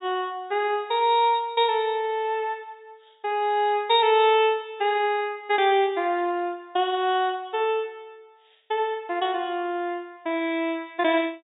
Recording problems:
low-pass filter; nothing above 4 kHz

